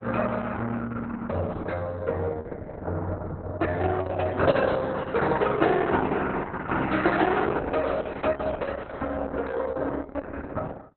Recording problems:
lossy compression; Opus, log-spectral distance 3 dB, nothing above 4.1 kHz

